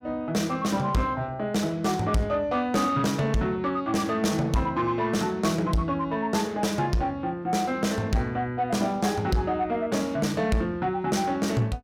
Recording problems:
distortion; soft clipping, signal-to-distortion ratio 11 dB

